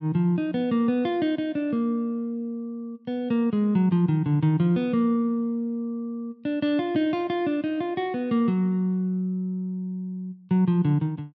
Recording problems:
none

